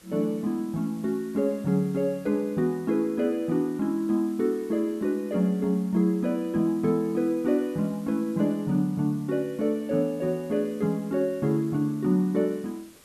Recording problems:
hiss; SNR 26 dB

